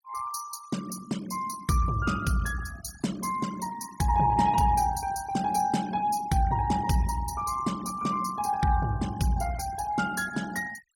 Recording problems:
denoising artefacts; signal-to-artefact ratio 16 dB

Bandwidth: 16.5 kHz